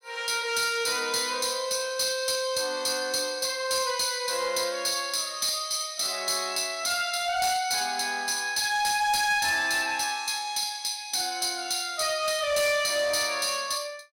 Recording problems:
distortion; hard clipping, signal-to-distortion ratio 12 dB

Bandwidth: 16.5 kHz